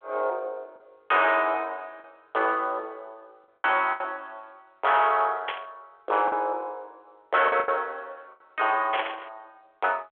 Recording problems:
phone line; 340 Hz to 3.6 kHz, G.726
distorted audio; soft clipping, signal-to-distortion ratio 11 dB
lost packets; 4% of the sound replaced, filled with the last packet
burst of static; at 5.5 s and at 9 s; peak 0 dB vs average level

